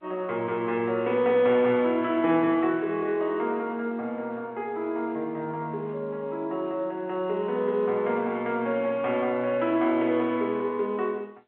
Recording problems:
phone line; 190 Hz to 3.6 kHz, G.711

